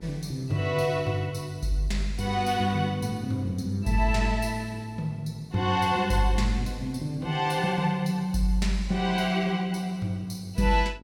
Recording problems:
hum; 50 Hz, harmonics up to 1.4 kHz, SNR 25 dB

